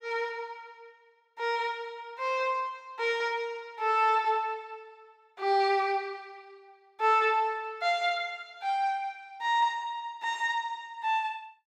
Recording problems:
none

